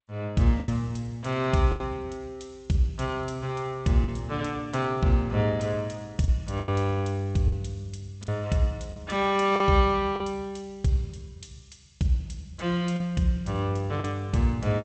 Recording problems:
codec artefacts; G.722, log-spectral distance 2 dB, nothing above 7.8 kHz
lost packets; 4% of the sound replaced, filled with the last packet

